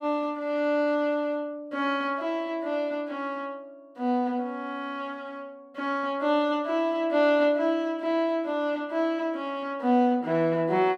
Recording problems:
none

